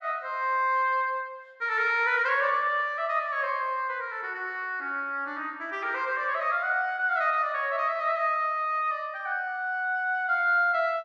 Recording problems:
none

